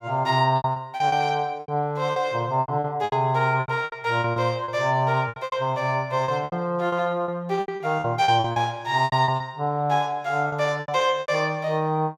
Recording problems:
lost packets; 15% of the sound replaced, filled with repeated pitch periods

